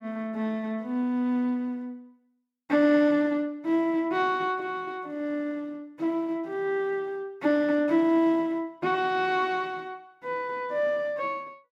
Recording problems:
none

